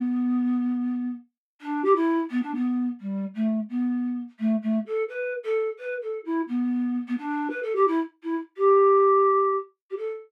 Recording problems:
none

